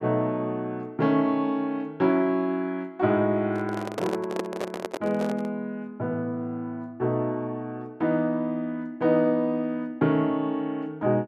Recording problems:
handling noise; from 3.5 to 5.5 s; peak 0 dB vs average level

